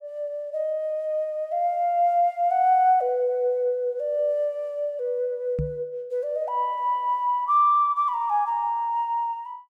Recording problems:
knock on the microphone; at 5.5 s; peak -1 dB vs average level

